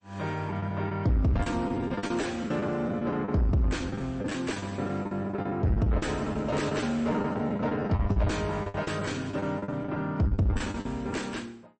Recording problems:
codec artefacts; MP3, log-spectral distance 2 dB, nothing above 8.2 kHz
distortion; soft clipping, signal-to-distortion ratio 9 dB
lost packets; 16% of the sound replaced, filled with the last packet

